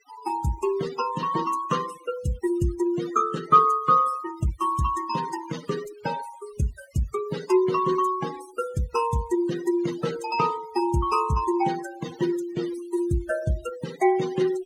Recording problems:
denoising artefacts; signal-to-artefact ratio 14 dB

